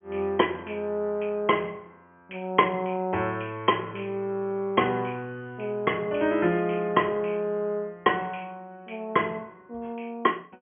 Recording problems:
treble cut off; nothing above 3.2 kHz

